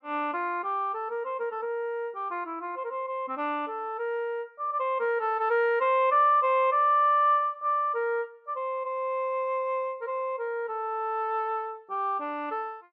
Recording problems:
none

